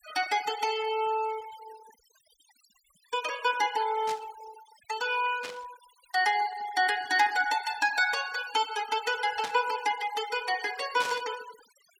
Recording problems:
noise reduction artefacts; signal-to-artefact ratio 15 dB
static burst; 4 times, first at 4 s; peak -4 dB vs average level

